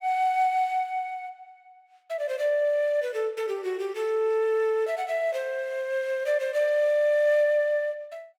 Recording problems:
none

